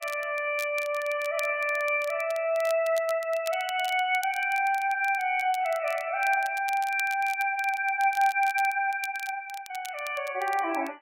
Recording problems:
lossy compression; MP3, log-spectral distance 3 dB
crackle; vinyl, SNR 18 dB

